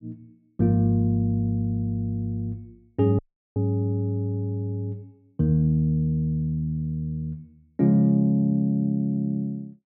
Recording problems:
audio cutting out; at 3 s

